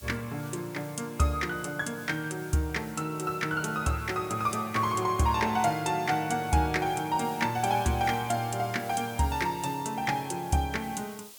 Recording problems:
hiss; SNR 18 dB

